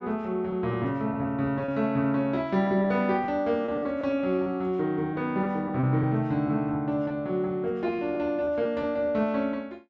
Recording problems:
lost packets; 6% of the sound replaced, filled with repeated pitch periods

